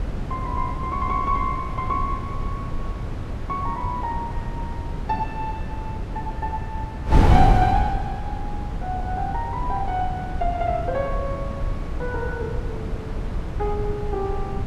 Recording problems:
wind noise; below 160 Hz, SNR 0 dB

